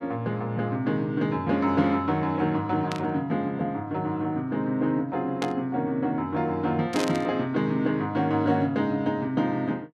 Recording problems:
burst of static; at 3 s, at 5.5 s and at 7 s; peak -3 dB vs average level

